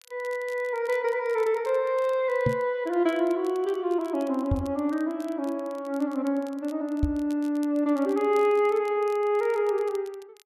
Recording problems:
crackle; vinyl, SNR 27 dB
microphone bump; at 2.5 s, at 4.5 s and at 7 s; peak +4 dB vs average level

